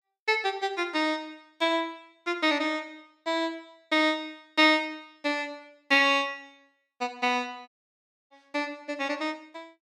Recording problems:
dropout; at 7.5 s for 0.5 s

